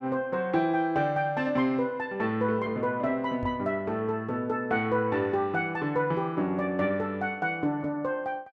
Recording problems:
knock on the microphone; at 3.5 s; peak -3 dB vs average level

